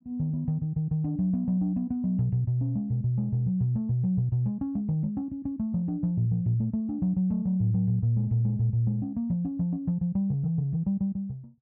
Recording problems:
none

